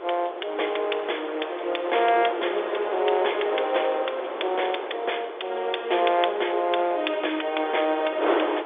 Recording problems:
phone line; 320 Hz to 3.6 kHz, G.711
wind noise; below 1 kHz, SNR 8 dB

